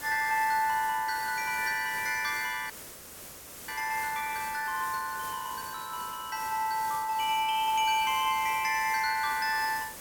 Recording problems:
hiss; slope -3 dB per octave, SNR 12 dB
audio freezing; at 2.5 s for 1 s

